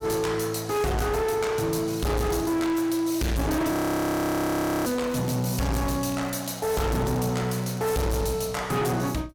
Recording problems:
distorted audio; hard clipping, uneven, signal-to-distortion ratio 6 dB
crackle; from 1.5 to 3.5 s and from 5 to 8 s; loose cable, SNR 22 dB
frozen audio; at 3.5 s for 1 s

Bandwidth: 17.5 kHz